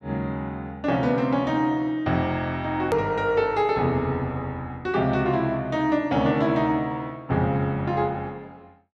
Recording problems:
edit click; at 3 s

